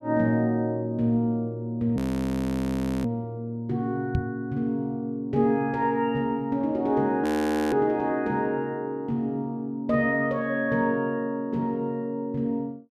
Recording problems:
frozen audio; at 2 s for 1 s and at 7 s
knock on the microphone; at 4 s; peak +4 dB vs average level

